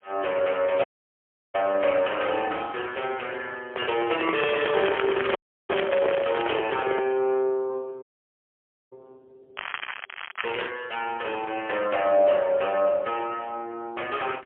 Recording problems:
phone line; 320 Hz to 3.4 kHz, AMR-NB, then MP3
dropout; at 1 s for 0.5 s, at 5.5 s and at 8 s for 1 s
handling noise; from 3.5 to 7 s; peak +2 dB vs average level
crackle; from 4.5 to 6.5 s and from 9.5 to 11 s; loose cable, SNR 9 dB

